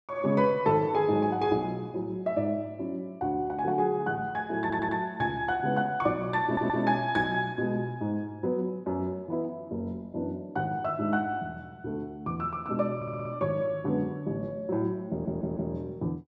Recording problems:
audio stuttering; 4 times, first at 4.5 s

